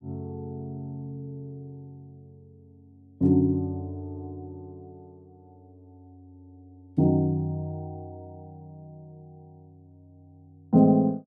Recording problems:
none

